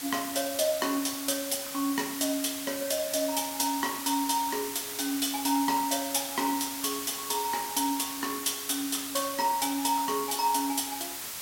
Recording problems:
background hiss; slope +1 dB per octave, SNR 6 dB

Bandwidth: 16.5 kHz